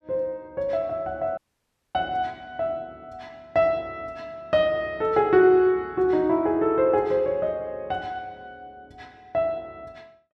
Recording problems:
dropout; at 1.5 s for 0.5 s

